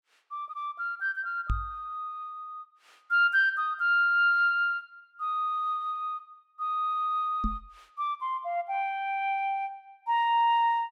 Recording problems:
knock on the microphone; at 1.5 s and at 7.5 s; peak 0 dB vs average level

